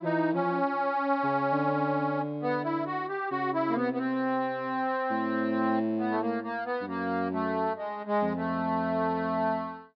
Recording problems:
treble cut off; nothing above 5.5 kHz

